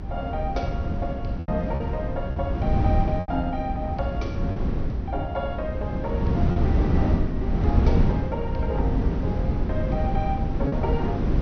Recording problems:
treble missing; nothing above 6.2 kHz
hum; 60 Hz, harmonics up to 480 Hz, SNR 14 dB
low-frequency rumble; below 76 Hz, SNR 4 dB
wind on the microphone; below 210 Hz, SNR -5 dB
lost packets; 3% of the sound replaced, filled with repeated pitch periods

